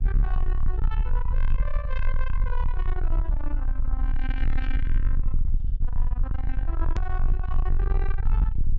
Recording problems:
treble missing; nothing above 8 kHz
distortion; soft clipping, signal-to-distortion ratio 8 dB
low-frequency rumble; below 44 Hz, strongest tone 20 Hz, SNR -10 dB
click at an edit; at 7 s

